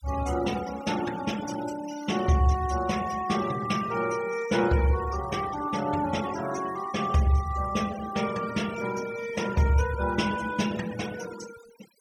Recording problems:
noise reduction artefacts; signal-to-artefact ratio 14 dB

